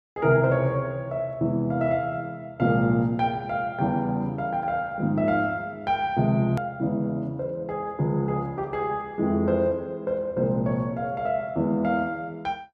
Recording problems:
click at an edit; at 6.5 s

